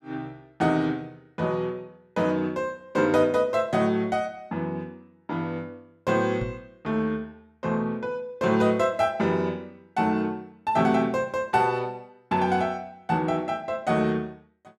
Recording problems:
microphone bump; at 6.5 s; peak -2 dB vs average level

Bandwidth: 14.5 kHz